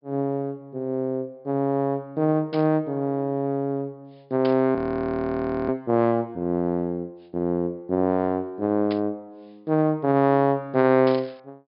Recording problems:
treble cut off; nothing above 5.5 kHz
static burst; 4 times, first at 2.5 s; peak -9 dB vs average level
frozen audio; at 5 s for 1 s

